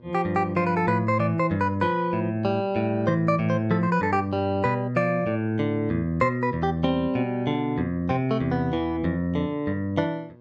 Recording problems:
electrical hum; 60 Hz, harmonics up to 1.1 kHz, SNR 25 dB

